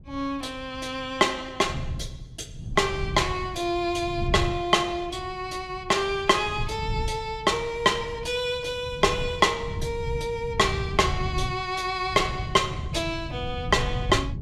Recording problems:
wind noise; below 140 Hz, SNR 9 dB

